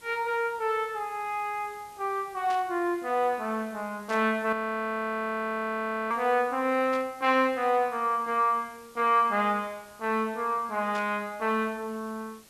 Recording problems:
background hiss; slope -1 dB per octave, SNR 25 dB
static burst; 4 times, first at 2.5 s; peak -10 dB vs average level
frozen audio; at 4.5 s for 1.5 s

